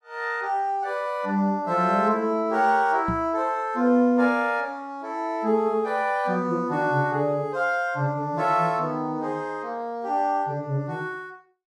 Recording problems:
microphone bump; at 3 s; peak -1 dB vs average level

